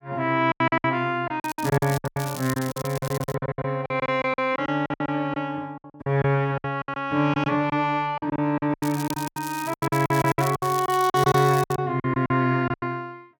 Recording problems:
packet loss; 19% of the sound replaced, filled with silence
crackle; at 1.5 s, from 2 to 3.5 s and from 9 to 12 s; loose cable, SNR 14 dB

